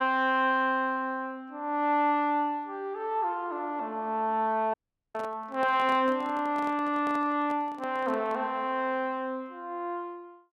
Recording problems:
audio cutting out; at 4.5 s
microphone handling noise; from 5 to 8.5 s; peak -9 dB vs average level

